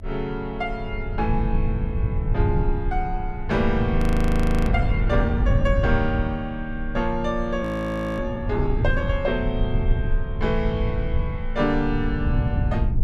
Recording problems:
low-frequency rumble; below 110 Hz, SNR 0 dB
frozen audio; at 4 s for 0.5 s and at 7.5 s for 0.5 s

